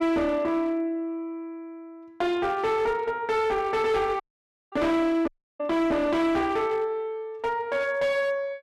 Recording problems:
distorted audio; hard clipping, signal-to-distortion ratio 10 dB
dropout; at 4 s for 0.5 s and at 5.5 s

